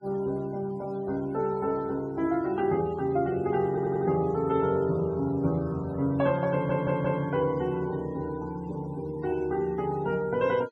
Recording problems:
denoising artefacts; signal-to-artefact ratio 24 dB
audio stuttering; at 3.5 s and at 6.5 s

